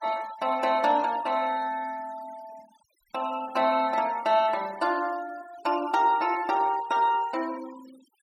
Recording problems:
noise reduction artefacts; signal-to-artefact ratio 21 dB

